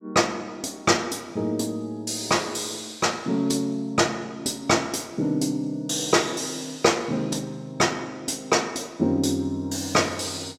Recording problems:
none

